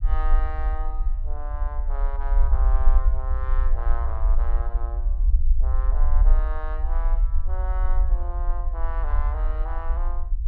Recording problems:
rumble; below 50 Hz, SNR -12 dB

